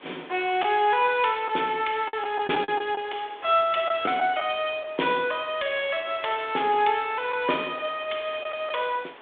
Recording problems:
phone line; 280 Hz to 3.6 kHz, G.726
hiss; SNR 22 dB
lost packets; 4% of the sound replaced, filled with the last packet

